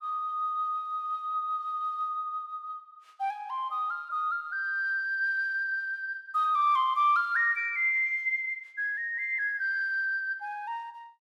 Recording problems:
none

